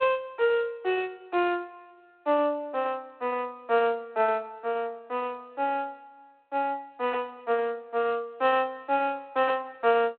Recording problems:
phone line; 320 Hz to 3.7 kHz, G.726

